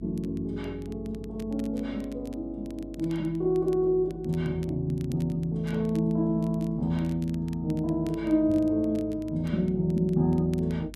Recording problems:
hum; 50 Hz, harmonics up to 350 Hz, SNR 19 dB
crackling; vinyl, SNR 28 dB

